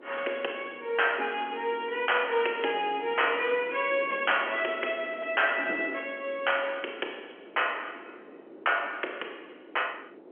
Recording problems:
phone line; 300 Hz to 3.2 kHz, G.711
wind noise; below 530 Hz, SNR 18 dB

